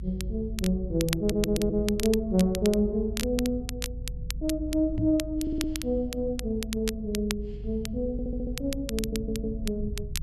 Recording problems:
rumble; below 78 Hz, strongest tone 52 Hz, SNR 9 dB
crackling; vinyl, SNR 10 dB
stutter; 4 times, first at 1 s
microphone bump; at 5 s; peak +1 dB vs average level

